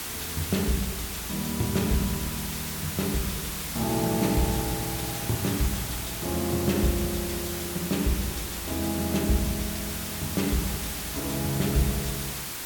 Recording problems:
background hiss; slope -1 dB per octave, SNR 3 dB

